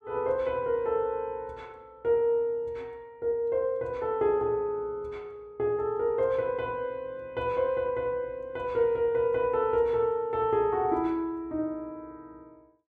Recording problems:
none

